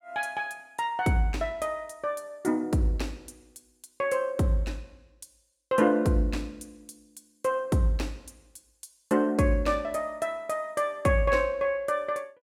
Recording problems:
none

